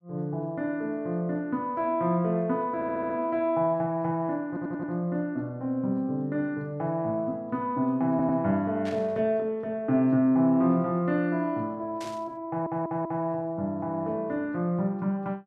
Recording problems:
audio stuttering; 4 times, first at 3 s
static burst; at 9 s and at 12 s; peak -10 dB vs average level

